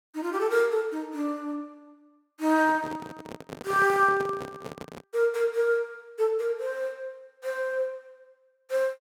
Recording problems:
handling noise; from 2.5 to 5 s; peak -6 dB vs average level

